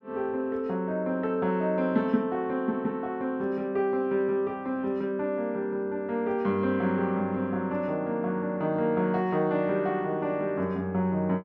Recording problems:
none

